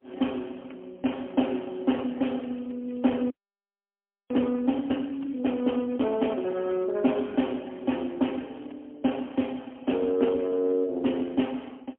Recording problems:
telephone audio; 190 Hz to 3.3 kHz, AMR-NB, then MP3
crackling; at 3 s and from 5 to 7 s; loose cable, SNR 30 dB
frozen audio; at 3.5 s for 1 s

